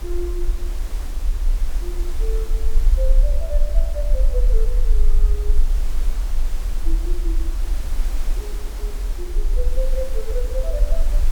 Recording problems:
hiss; slope -4 dB per octave, SNR 5 dB
low-frequency rumble; below 40 Hz, strongest tone 20 Hz, SNR -11 dB

